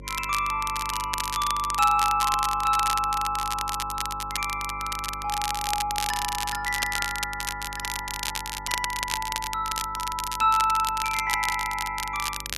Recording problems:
mains hum; 50 Hz, harmonics up to 600 Hz, SNR 17 dB
crackle; vinyl, SNR 5 dB

